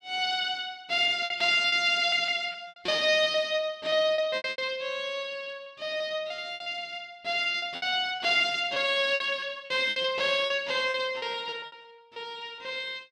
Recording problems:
packet loss; 13% of the sound replaced, filled with repeated pitch periods

